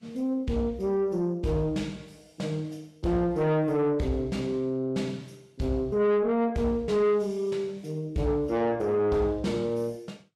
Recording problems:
lossy codec; Vorbis, log-spectral distance 2 dB, nothing above 12.7 kHz
distortion; soft clipping, signal-to-distortion ratio 11 dB

